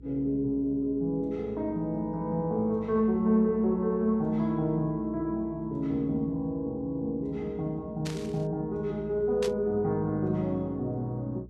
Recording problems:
hum; 60 Hz, harmonics up to 420 Hz, SNR 21 dB
burst of static; at 8 s and at 9.5 s; peak -5 dB vs average level

